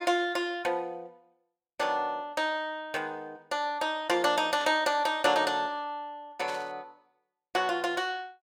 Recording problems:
static burst; at 4.5 s and at 6.5 s; peak -9 dB vs average level

